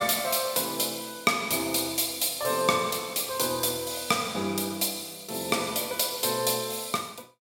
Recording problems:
none

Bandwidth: 17 kHz